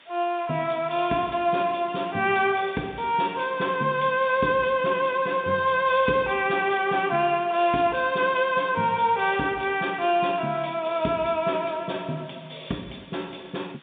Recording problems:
telephone audio; 130 Hz to 3.7 kHz, G.711
hiss; SNR 27 dB

